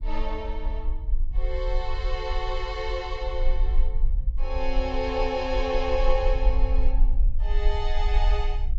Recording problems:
treble cut off; nothing above 8 kHz
low-frequency rumble; below 42 Hz, strongest tone 22 Hz, SNR -2 dB

